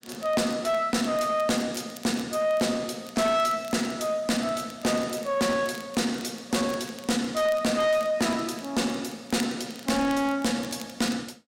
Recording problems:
distortion; soft clipping, signal-to-distortion ratio 8 dB
crackling; vinyl, SNR 21 dB

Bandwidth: 16 kHz